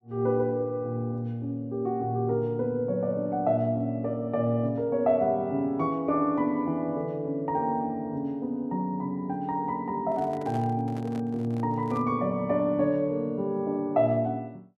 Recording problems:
microphone handling noise; from 10 to 12 s; peak -10 dB vs average level

